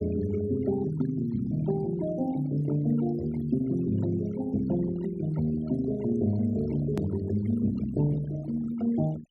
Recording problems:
denoising artefacts; signal-to-artefact ratio 17 dB
edit click; at 7 s

